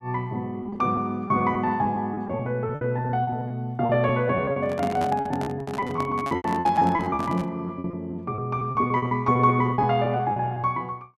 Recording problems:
lost packets; 17% of the sound replaced, filled with repeated pitch periods
handling noise; from 4.5 to 7.5 s; peak -3 dB vs average level

